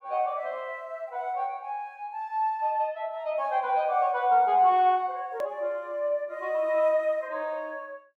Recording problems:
edit click; at 5.5 s

